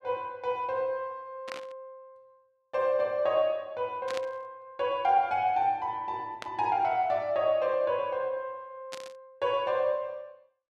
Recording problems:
burst of static; 4 times, first at 1.5 s; peak -5 dB vs average level

